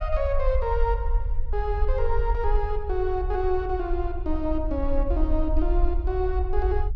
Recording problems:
rumble; below 54 Hz, SNR 1 dB

